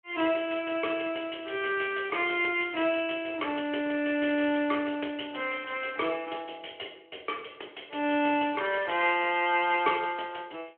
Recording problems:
telephone audio; 260 Hz to 3.3 kHz, Speex

